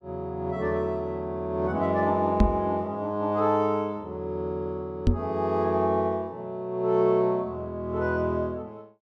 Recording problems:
microphone bump; at 2.5 s and at 5 s; peak +9 dB vs average level

